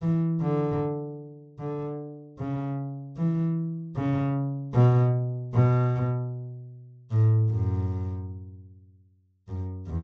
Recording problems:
treble cut off; nothing above 8 kHz

